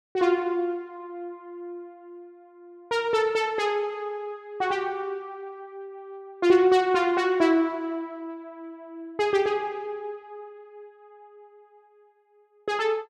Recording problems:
none

